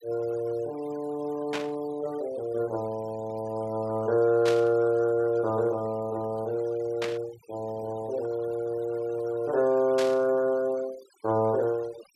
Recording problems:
denoising artefacts; signal-to-artefact ratio 21 dB
burst of static; 4 times, first at 1.5 s; peak -2 dB vs average level

